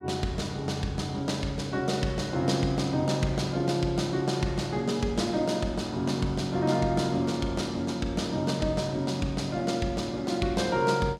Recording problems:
none

